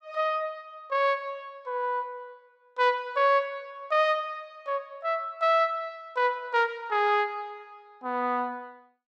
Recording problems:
none

